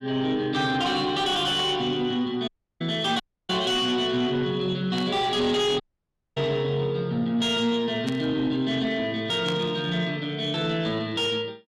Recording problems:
distorted audio; soft clipping, signal-to-distortion ratio 11 dB
burst of static; 4 times, first at 1.5 s; peak -6 dB vs average level
dropout; at 2.5 s, at 3 s and at 6 s for 0.5 s

